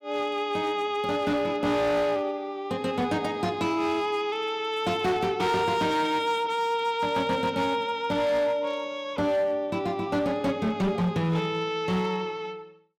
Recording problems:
distortion; hard clipping, signal-to-distortion ratio 12 dB

